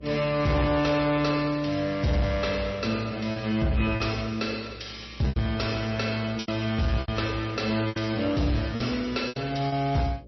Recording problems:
lossy compression; MP3, log-spectral distance 5 dB, nothing above 5.8 kHz
distorted audio; soft clipping, signal-to-distortion ratio 11 dB
hum; 60 Hz, harmonics up to 600 Hz, SNR 22 dB
lost packets; 6% of the sound replaced, filled with repeated pitch periods

